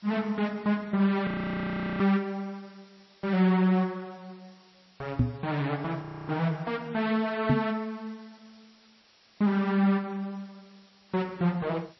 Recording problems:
codec artefacts; MP3, log-spectral distance 8 dB, nothing above 5 kHz
background hiss; slope 0 dB per octave, SNR 30 dB
frozen audio; at 1.5 s for 0.5 s and at 6 s
microphone bump; at 5 s and at 7.5 s; peak +8 dB vs average level

